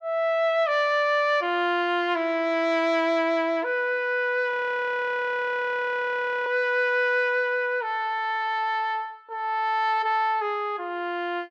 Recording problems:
audio freezing; at 4.5 s for 2 s

